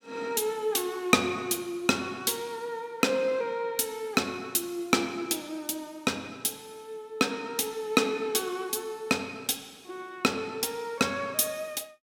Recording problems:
none

